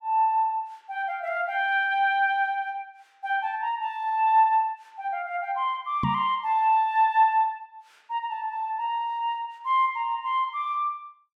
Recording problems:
microphone thump; at 6 s; peak +1 dB vs average level

